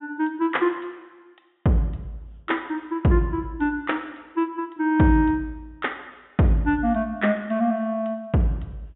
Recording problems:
treble cut off; nothing above 3.6 kHz

